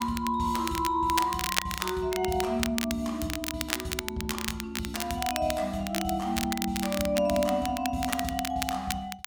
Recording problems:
crackling; vinyl, SNR 5 dB

